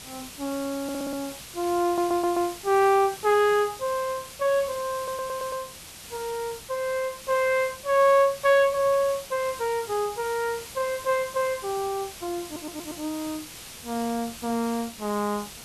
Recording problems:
background hiss; slope 0 dB per octave, SNR 14 dB
audio stuttering; 4 times, first at 1 s

